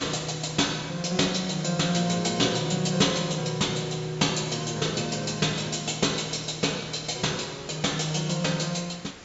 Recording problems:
treble missing; nothing above 8 kHz
background hiss; slope -3 dB per octave, SNR 18 dB

